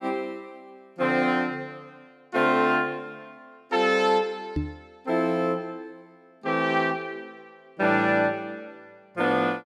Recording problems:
microphone thump; at 4.5 s; peak 0 dB vs average level

